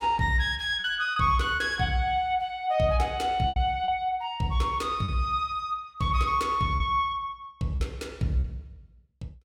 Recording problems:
lost packets; 5% of the sound replaced, filled with repeated pitch periods

